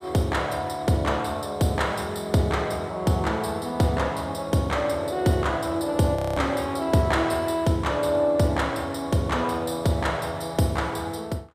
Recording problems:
frozen audio; at 6 s

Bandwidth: 15 kHz